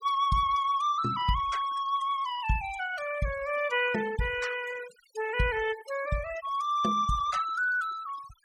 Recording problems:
denoising artefacts; signal-to-artefact ratio 15 dB

